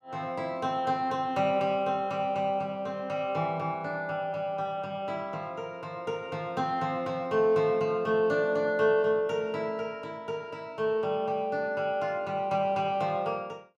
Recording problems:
none

